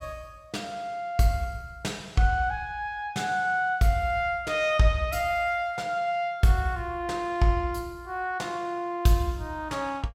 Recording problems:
none

